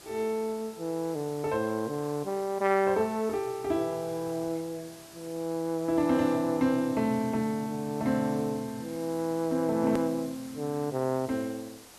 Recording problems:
background hiss; slope -2 dB per octave, SNR 19 dB
click at an edit; at 10 s

